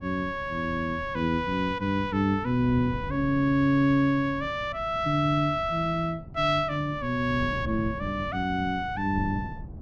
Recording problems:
wind on the microphone; below 180 Hz, SNR 14 dB

